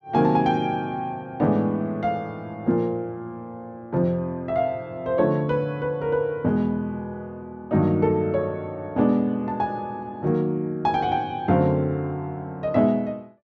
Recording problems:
none

